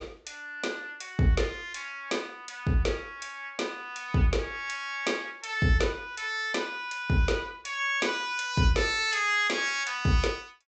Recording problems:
low-pass filter; nothing above 8 kHz

